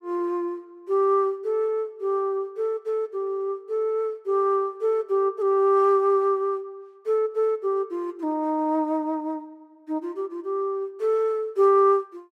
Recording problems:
none

